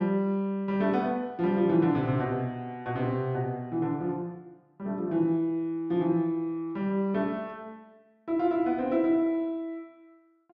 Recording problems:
none

